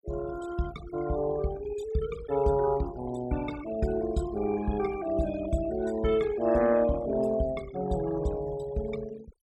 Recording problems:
noise reduction artefacts; signal-to-artefact ratio 17 dB

